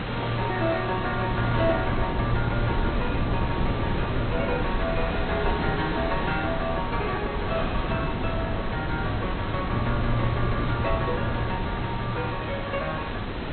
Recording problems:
low-pass filter; nothing above 4.1 kHz
lossy compression; MP2, then MP3, log-spectral distance 2 dB
hiss; SNR 5 dB
wind noise; below 290 Hz, SNR 3 dB

